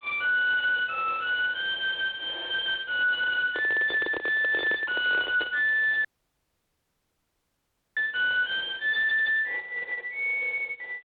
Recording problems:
telephone audio; 320 Hz to 3.9 kHz, G.726
distortion; soft clipping, signal-to-distortion ratio 8 dB
microphone handling noise; from 3.5 to 5.5 s; peak -4 dB vs average level
audio cutting out; at 6 s for 2 s

